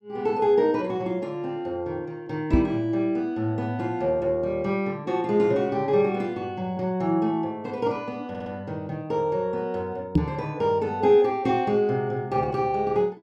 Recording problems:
microphone bump; at 2.5 s and at 10 s; peak +9 dB vs average level
stutter; at 8.5 s

